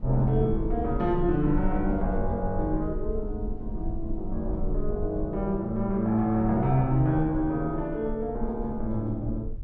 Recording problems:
low-frequency rumble; below 52 Hz, strongest tone 20 Hz, SNR 9 dB

